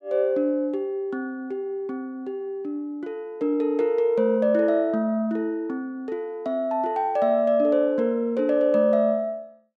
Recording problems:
none

